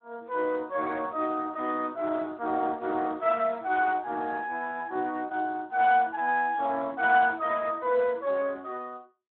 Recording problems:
phone line; 260 Hz to 3.7 kHz, Speex

